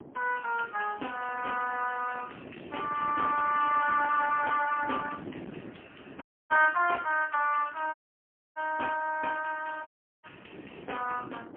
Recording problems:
phone line; 340 Hz to 2.7 kHz, AMR-NB, then MP3
wind on the microphone; below 460 Hz, SNR 16 dB
audio cutting out; at 6 s, at 8 s for 0.5 s and at 10 s

